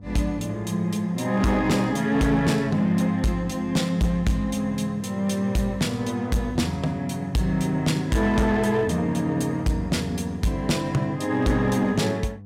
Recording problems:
distortion; hard clipping, signal-to-distortion ratio 11 dB
hum; 50 Hz, harmonics up to 700 Hz, SNR 18 dB

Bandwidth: 16 kHz